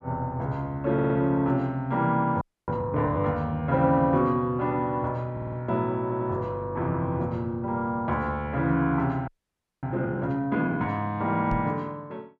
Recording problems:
audio stuttering; at 1 s, at 5.5 s and at 6 s
frozen audio; at 2.5 s and at 9.5 s for 0.5 s
knock on the microphone; at 12 s; peak -1 dB vs average level

